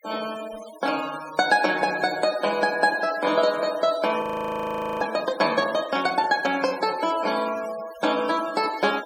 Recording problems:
noise reduction artefacts; signal-to-artefact ratio 17 dB
audio freezing; at 4 s for 1 s

